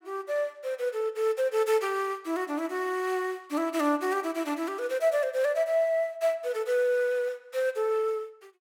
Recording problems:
none

